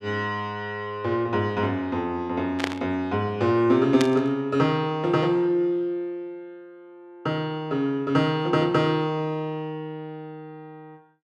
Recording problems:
static burst; at 2.5 s and at 4 s; peak +2 dB vs average level

